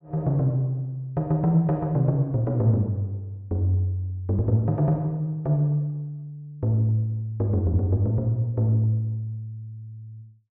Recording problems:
none

